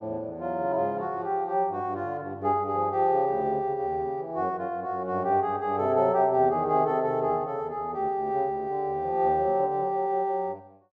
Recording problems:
none

